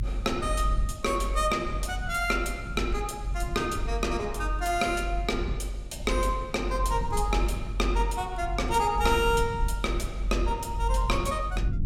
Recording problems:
rumble; below 52 Hz, strongest tone 46 Hz, SNR 4 dB

